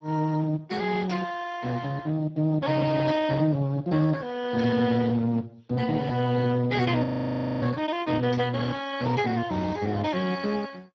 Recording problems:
codec artefacts; MP2, then Speex, log-spectral distance 4 dB, nothing above 16.6 kHz
static burst; 4 times, first at 1 s; peak -7 dB vs average level
frozen audio; at 7 s for 0.5 s

